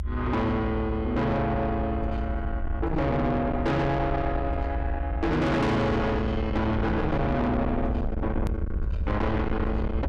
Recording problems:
distorted audio; soft clipping, signal-to-distortion ratio 7 dB
low-frequency rumble; below 150 Hz, SNR 4 dB
hard cut with a click; at 8.5 s

